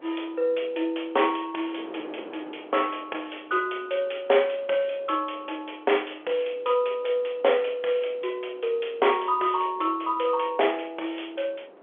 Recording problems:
phone line; 340 Hz to 3.4 kHz, G.711
wind noise; below 730 Hz, SNR 21 dB

